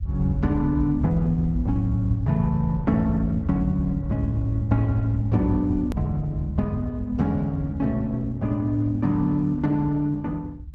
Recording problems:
codec artefacts; Opus, log-spectral distance 2 dB, nothing above 13.1 kHz
rumble; below 92 Hz, SNR 6 dB
edit click; at 6 s

